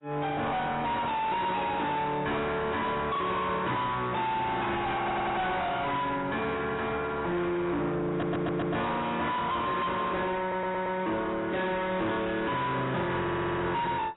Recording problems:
lossy codec; AAC, log-spectral distance 3 dB, nothing above 3.8 kHz
distorted audio; soft clipping, signal-to-distortion ratio 6 dB
audio stuttering; 4 times, first at 5 s

